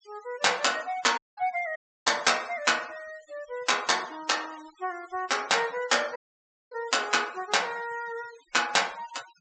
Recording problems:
low-pass filter; nothing above 8 kHz
denoising artefacts; signal-to-artefact ratio 19 dB
audio cutting out; at 1 s, at 2 s and at 6 s for 0.5 s

